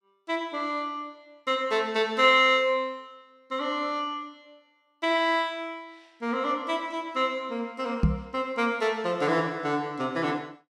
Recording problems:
microphone thump; at 8 s; peak +7 dB vs average level

